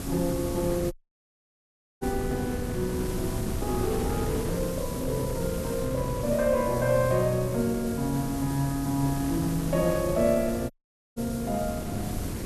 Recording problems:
hiss; SNR 13 dB
wind noise; below 330 Hz, SNR 6 dB
audio cutting out; at 1 s for 1 s and at 11 s

